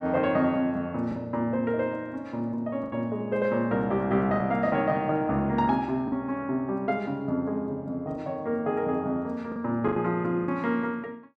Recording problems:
packet loss; 4% of the sound replaced, filled with the last packet

